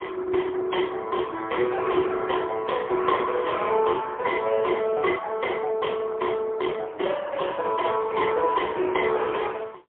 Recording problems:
phone line; 300 Hz to 3.2 kHz, AMR-NB, then MP3

